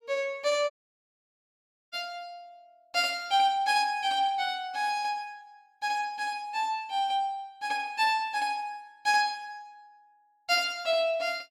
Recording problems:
audio cutting out; at 0.5 s for 1 s

